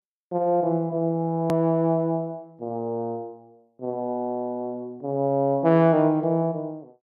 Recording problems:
edit click; at 1.5 s

